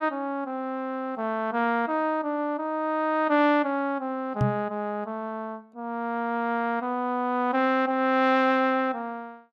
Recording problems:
knock on the microphone; at 4.5 s; peak +6 dB vs average level

